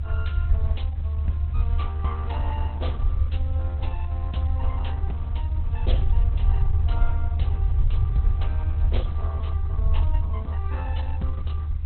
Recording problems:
codec artefacts; Opus, log-spectral distance 2 dB, nothing above 4 kHz
background hiss; SNR 19 dB
rumble; below 78 Hz, SNR -13 dB

